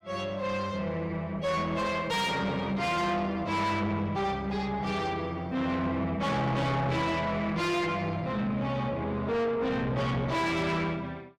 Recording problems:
distorted audio; soft clipping, signal-to-distortion ratio 6 dB

